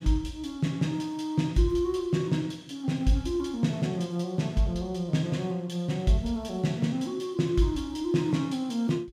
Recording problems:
none

